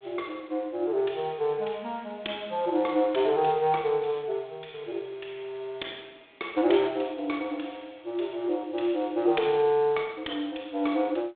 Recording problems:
telephone audio; 260 Hz to 3.6 kHz, G.726

